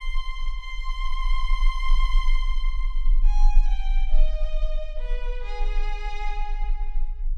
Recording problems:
rumble; below 30 Hz, strongest tone 20 Hz, SNR -8 dB

